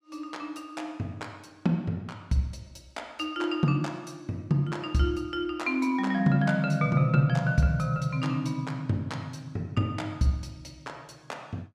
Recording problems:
none

